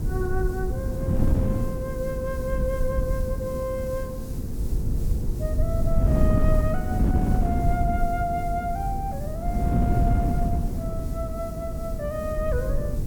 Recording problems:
electrical hum; 50 Hz, harmonics up to 500 Hz, SNR 7 dB
background hiss; SNR 17 dB
rumble; below 82 Hz, SNR 1 dB
wind on the microphone; below 200 Hz, SNR -2 dB

